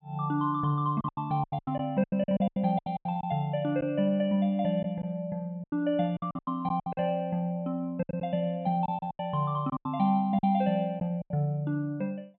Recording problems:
treble missing; nothing above 4 kHz
lost packets; 12% of the sound replaced, filled with silence

